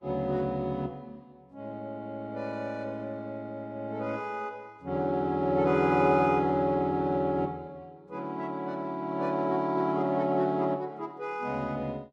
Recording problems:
codec artefacts; Vorbis, log-spectral distance 2 dB

